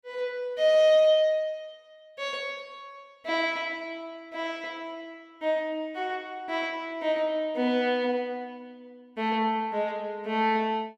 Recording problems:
none

